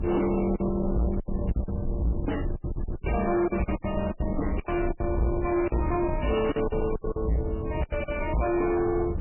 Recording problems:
lossy codec; MP3, log-spectral distance 4 dB, nothing above 2.4 kHz
distortion; soft clipping, signal-to-distortion ratio 7 dB
rumble; below 160 Hz, SNR 5 dB
lost packets; 13% of the sound replaced, filled with silence

